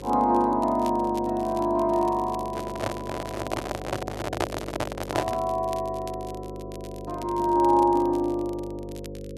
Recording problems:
hum; 50 Hz, harmonics up to 550 Hz, SNR 13 dB
crackling; vinyl, SNR 24 dB
handling noise; from 2.5 to 5.5 s; peak +3 dB vs average level

